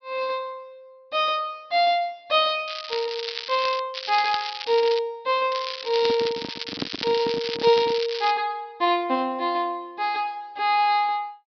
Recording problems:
treble missing; nothing above 5.5 kHz
crackle; from 2.5 to 4 s, from 4 to 5 s and from 5.5 to 8.5 s; loose cable, SNR 8 dB
handling noise; from 6 to 8 s; peak -1 dB vs average level

